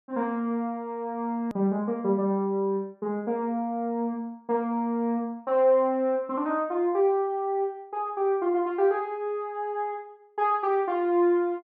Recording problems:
edit click; at 1.5 s

